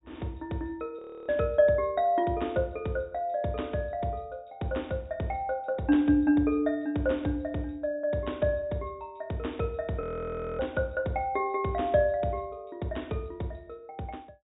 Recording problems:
treble missing; nothing above 4 kHz
frozen audio; at 1 s and at 10 s for 0.5 s

